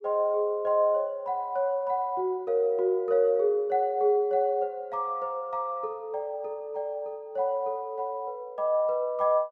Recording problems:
none

